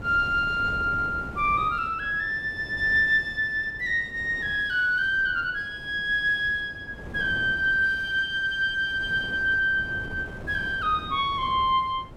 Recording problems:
wind noise; below 450 Hz, SNR 17 dB

